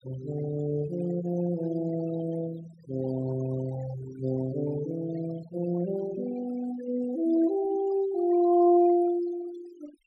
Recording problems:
noise reduction artefacts; signal-to-artefact ratio 17 dB

